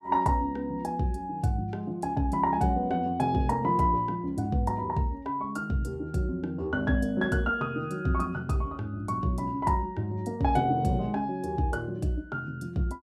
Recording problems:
none

